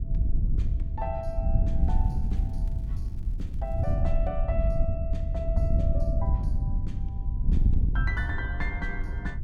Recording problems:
wind on the microphone; below 80 Hz, SNR -8 dB
crackling; from 2 to 4 s; loose cable, SNR 28 dB

